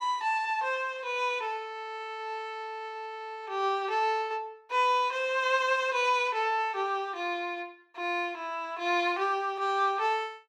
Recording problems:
none

